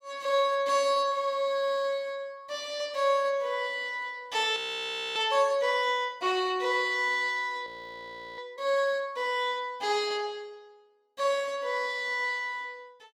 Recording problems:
audio freezing; at 4.5 s for 0.5 s and at 7.5 s for 0.5 s

